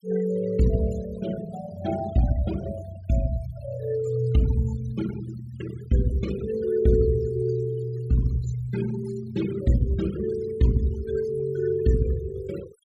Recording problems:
noise reduction artefacts; signal-to-artefact ratio 15 dB

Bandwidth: 15.5 kHz